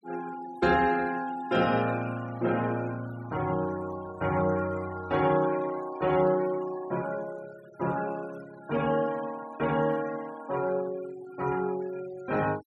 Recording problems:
denoising artefacts; signal-to-artefact ratio 17 dB

